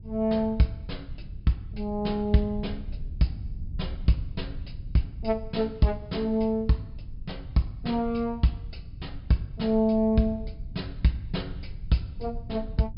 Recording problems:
treble cut off; nothing above 5.5 kHz
low-frequency rumble; below 90 Hz, SNR 12 dB

